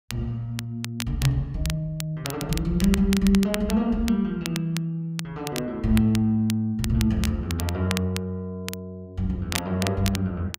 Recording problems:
crackling; vinyl, SNR 10 dB

